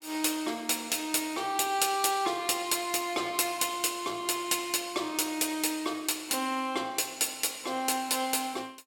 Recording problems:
none

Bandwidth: 17 kHz